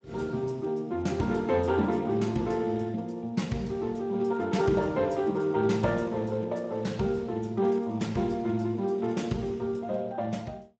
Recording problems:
lossy codec; Speex, log-spectral distance 3 dB, nothing above 7.6 kHz

